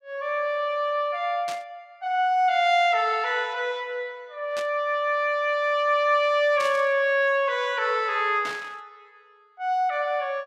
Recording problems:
static burst; 4 times, first at 1.5 s; peak -8 dB vs average level

